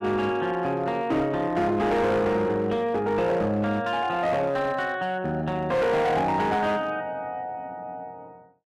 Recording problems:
distortion; hard clipping, signal-to-distortion ratio 10 dB

